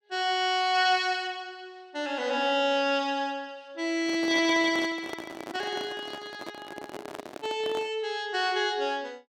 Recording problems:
handling noise; from 4 to 8 s; peak -6 dB vs average level

